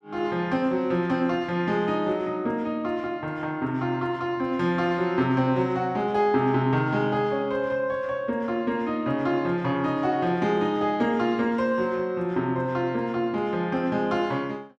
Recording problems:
none

